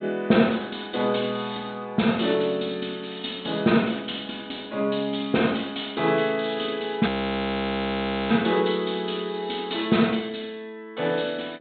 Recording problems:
treble missing; nothing above 4 kHz
audio freezing; at 7 s for 1 s

